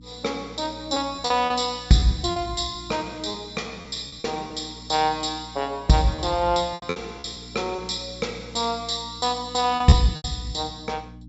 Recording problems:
treble cut off; nothing above 8 kHz
electrical hum; 60 Hz, harmonics up to 300 Hz, SNR 20 dB
packet loss; 7% of the sound replaced, filled with repeated pitch periods

